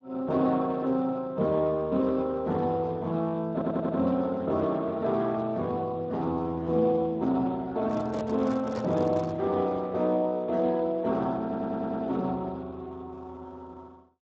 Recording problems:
codec artefacts; Speex, log-spectral distance 2 dB
stutter; at 3.5 s and at 11 s
handling noise; from 8 to 9.5 s; peak -3 dB vs average level

